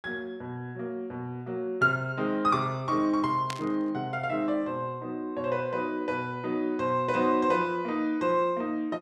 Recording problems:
static burst; at 3.5 s; peak -3 dB vs average level

